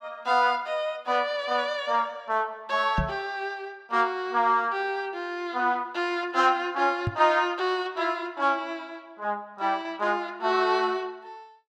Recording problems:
microphone bump; at 3 s and at 7 s; peak +2 dB vs average level

